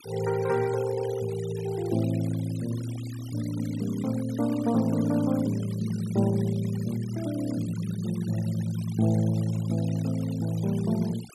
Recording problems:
noise reduction artefacts; signal-to-artefact ratio 18 dB

